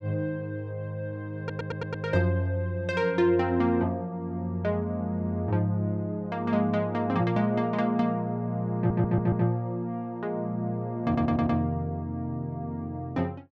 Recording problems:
stutter; at 1.5 s, at 9 s and at 11 s

